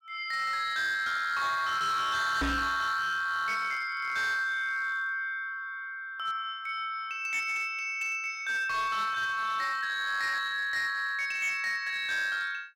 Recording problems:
distortion; hard clipping, signal-to-distortion ratio 10 dB
microphone thump; at 2.5 s; peak +4 dB vs average level

